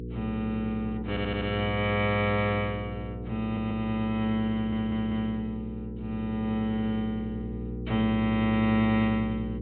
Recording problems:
treble cut off; nothing above 4.1 kHz
hum; 60 Hz, harmonics up to 480 Hz, SNR 9 dB
audio stuttering; at 1 s, at 3.5 s and at 4.5 s

